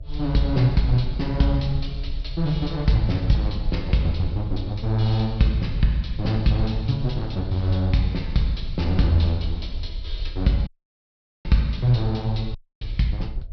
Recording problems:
low-pass filter; nothing above 5.5 kHz
hum; 60 Hz, harmonics up to 660 Hz, SNR 36 dB
rumble; below 58 Hz, SNR 10 dB
audio cutting out; at 11 s for 1 s and at 13 s

